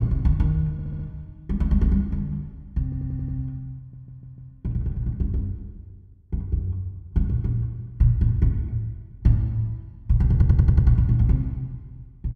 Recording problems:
stutter; 4 times, first at 0.5 s

